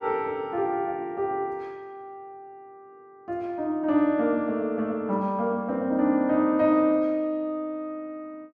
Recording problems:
none

